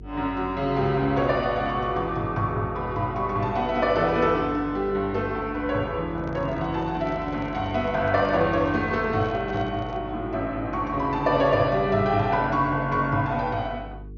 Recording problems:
treble missing; nothing above 6.7 kHz
hum; 50 Hz, harmonics up to 450 Hz, SNR 17 dB
microphone handling noise; from 6 to 10 s; peak -10 dB vs average level

